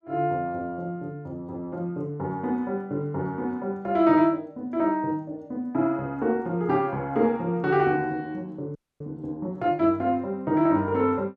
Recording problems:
frozen audio; at 9 s

